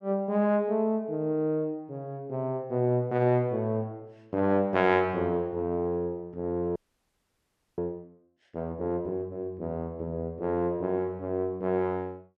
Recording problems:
audio freezing; at 7 s for 1 s

